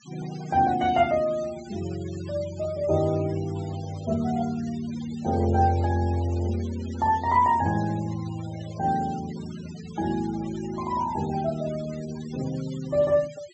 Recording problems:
treble missing; nothing above 7.9 kHz
noise reduction artefacts; signal-to-artefact ratio 19 dB

